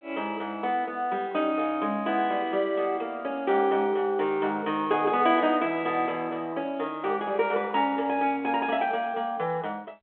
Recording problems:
phone line; 340 Hz to 3.7 kHz, G.726

